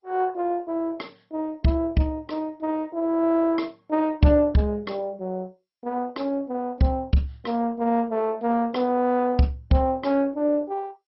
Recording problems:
lossy codec; MP2, log-spectral distance 3 dB, nothing above 5.5 kHz

